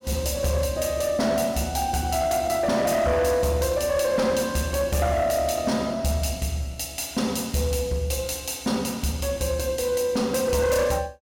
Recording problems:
distortion; hard clipping, uneven, signal-to-distortion ratio 11 dB

